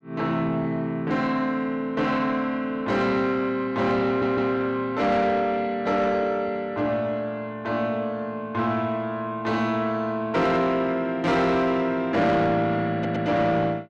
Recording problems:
distorted audio; soft clipping, signal-to-distortion ratio 12 dB
audio stuttering; at 4 s and at 13 s

